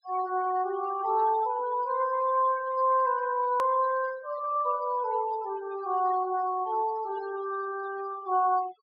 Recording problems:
treble cut off; nothing above 5.5 kHz
noise reduction artefacts; signal-to-artefact ratio 19 dB
hard cut with a click; at 3.5 s

